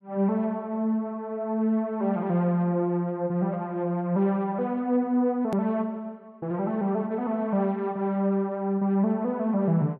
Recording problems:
hard cut with a click; at 5.5 s

